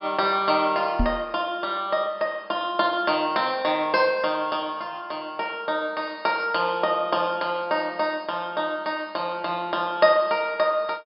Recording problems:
low-pass filter; nothing above 5.3 kHz
microphone bump; at 1 s; peak +3 dB vs average level

